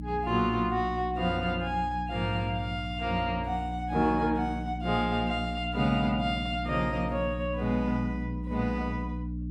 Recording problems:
hum; 60 Hz, harmonics up to 300 Hz, SNR 6 dB

